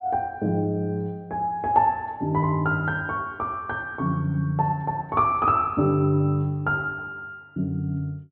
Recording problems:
treble missing; nothing above 3.9 kHz

